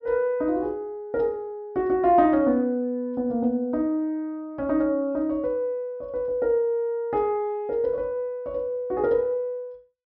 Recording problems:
treble missing; nothing above 5.5 kHz

